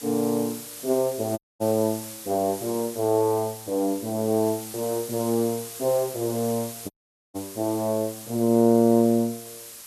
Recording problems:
background hiss; slope +1 dB per octave, SNR 13 dB
audio cutting out; at 1.5 s and at 7 s

